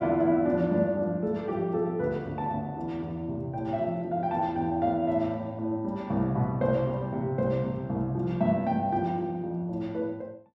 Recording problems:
none

